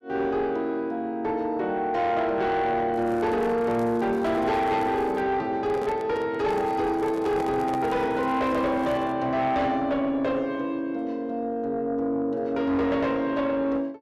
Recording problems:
distortion; soft clipping, signal-to-distortion ratio 11 dB
crackling; from 3 to 5 s and from 6.5 to 9 s; loose cable, SNR 29 dB
handling noise; from 5.5 to 8 s; peak -5 dB vs average level

